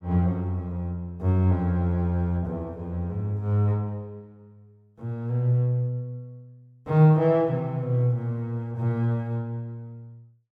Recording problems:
none

